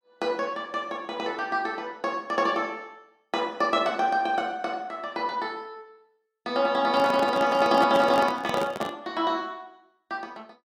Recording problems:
handling noise; from 7 to 9 s; peak -1 dB vs average level

